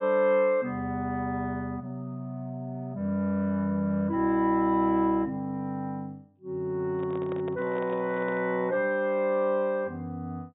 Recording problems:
treble cut off; nothing above 4 kHz
microphone handling noise; from 7 to 8.5 s; peak -8 dB vs average level

